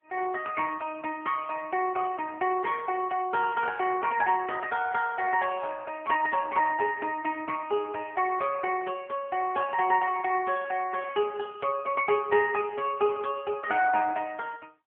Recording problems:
telephone audio; 260 Hz to 3.3 kHz, AMR-NB

